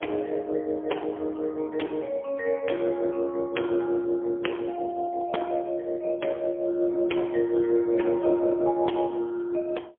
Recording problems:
telephone audio; 280 Hz to 3.3 kHz, AMR-NB, then MP3

